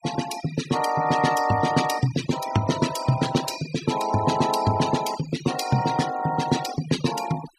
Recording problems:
denoising artefacts; signal-to-artefact ratio 11 dB

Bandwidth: 15 kHz